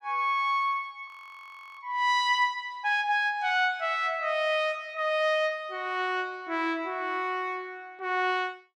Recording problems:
audio freezing; at 1 s for 0.5 s

